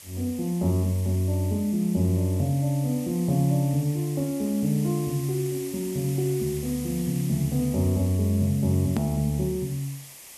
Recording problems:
hiss; SNR 15 dB
edit click; at 9 s

